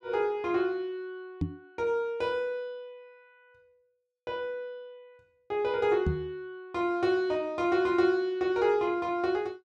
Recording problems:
knock on the microphone; at 1.5 s and at 6 s; peak +3 dB vs average level

